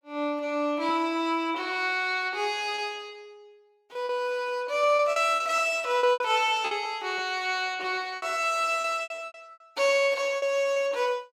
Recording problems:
packet loss; 8% of the sound replaced, filled with repeated pitch periods

